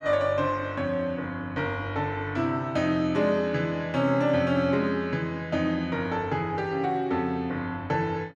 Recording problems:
none

